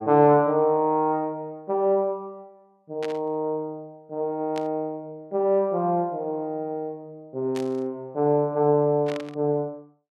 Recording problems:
static burst; 4 times, first at 3 s; peak -8 dB vs average level

